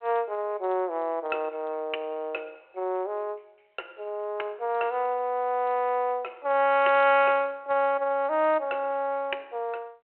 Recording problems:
phone line; 320 Hz to 3.1 kHz, G.726

